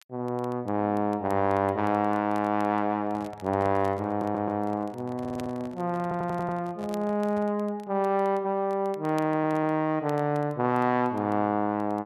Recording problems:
crackling; vinyl, SNR 29 dB
handling noise; from 3 to 7.5 s; peak -11 dB vs average level
stutter; 4 times, first at 4 s

